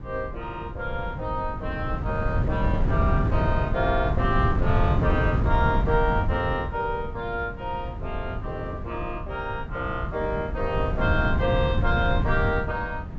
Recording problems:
treble cut off; nothing above 7.6 kHz
wind on the microphone; below 150 Hz, SNR 0 dB

